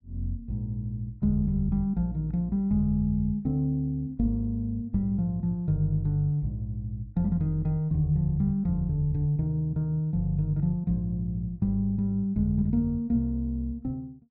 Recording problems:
none

